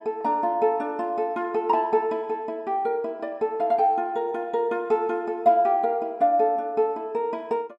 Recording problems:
none

